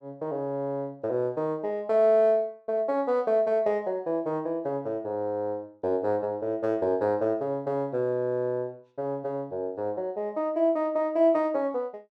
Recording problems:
none

